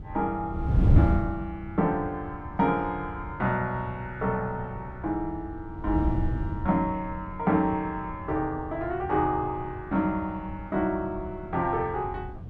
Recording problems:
wind on the microphone; below 140 Hz, SNR 4 dB

